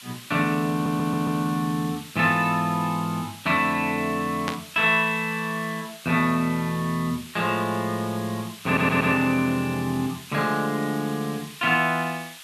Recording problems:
background hiss; SNR 17 dB
stutter; at 0.5 s and at 8.5 s
burst of static; at 4.5 s; peak -1 dB vs average level

